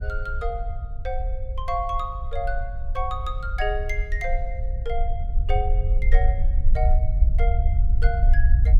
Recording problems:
low-frequency rumble; below 58 Hz, SNR -5 dB

